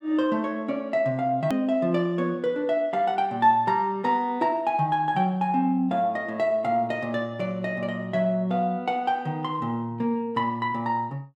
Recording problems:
click at an edit; at 1.5 s

